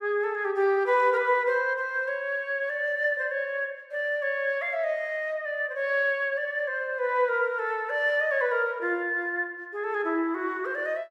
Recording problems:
none

